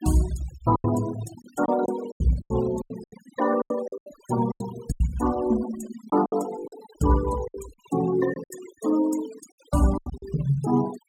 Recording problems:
noise reduction artefacts; signal-to-artefact ratio 15 dB
packet loss; 13% of the sound replaced, filled with silence

